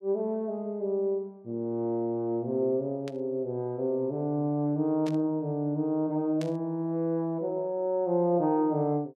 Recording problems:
burst of static; at 3 s, at 5 s and at 6.5 s; peak -9 dB vs average level

